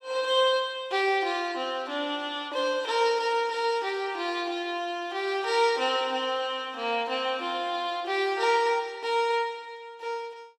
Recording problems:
none

